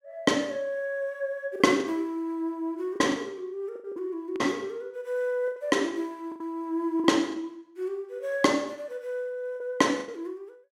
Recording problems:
lost packets; 7% of the sound replaced, filled with the last packet

